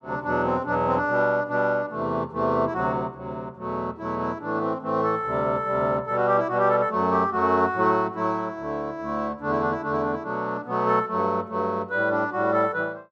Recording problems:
none

